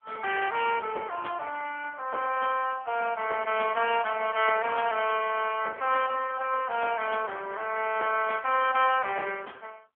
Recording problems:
telephone audio; 370 Hz to 3.2 kHz, AMR-NB

